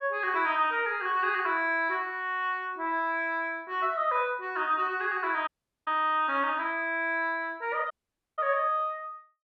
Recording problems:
audio cutting out; at 5.5 s and at 8 s

